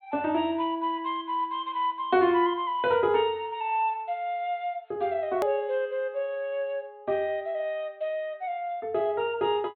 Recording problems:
treble cut off; nothing above 4.2 kHz
hard cut with a click; at 5.5 s

